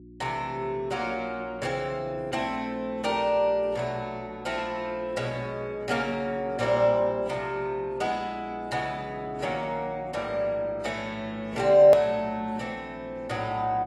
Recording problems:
lossy compression; AAC, log-spectral distance 2 dB, nothing above 18.9 kHz
hum; 60 Hz, harmonics up to 360 Hz, SNR 20 dB
edit click; at 12 s

